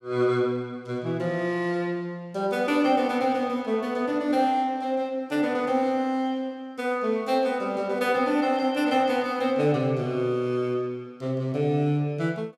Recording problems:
none

